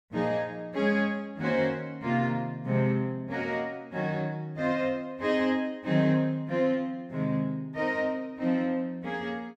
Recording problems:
none

